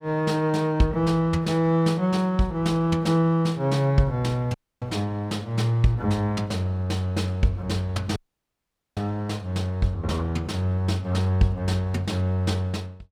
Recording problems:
dropout; at 4.5 s and at 8 s for 1 s

